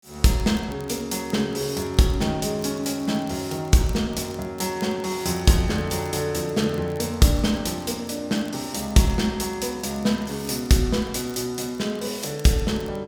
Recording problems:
crackle; vinyl, SNR 25 dB

